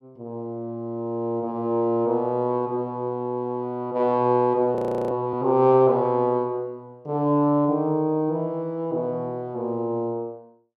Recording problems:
audio freezing; at 5 s

